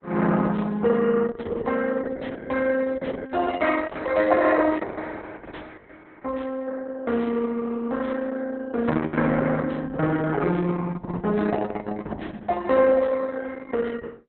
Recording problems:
codec artefacts; Opus, log-spectral distance 4 dB, nothing above 4 kHz

